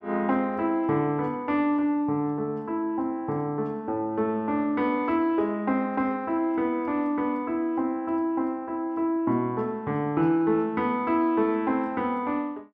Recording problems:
none

